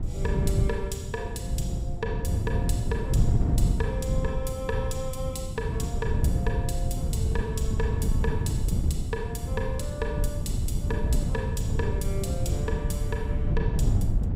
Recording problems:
wind on the microphone; below 130 Hz, SNR -6 dB

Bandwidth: 15.5 kHz